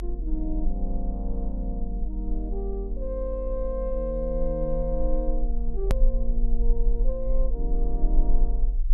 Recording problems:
low-frequency rumble; below 44 Hz, strongest tone 18 Hz, SNR -3 dB
hard cut with a click; at 6 s

